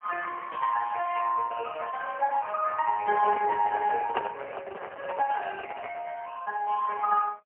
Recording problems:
phone line; 370 Hz to 2.2 kHz, AMR-NB, then MP3
microphone handling noise; from 3 to 6 s; peak 0 dB vs average level

